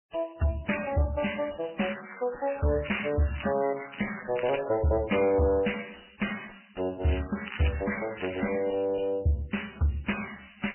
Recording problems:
codec artefacts; MP3, then MP3, log-spectral distance 13 dB, nothing above 3 kHz
distorted audio; soft clipping, signal-to-distortion ratio 11 dB
crackle; from 2 to 4.5 s and from 7 to 8.5 s; loose cable, SNR 10 dB

